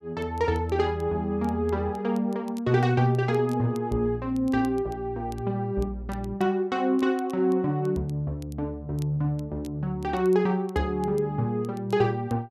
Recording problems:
crackle; vinyl, SNR 29 dB

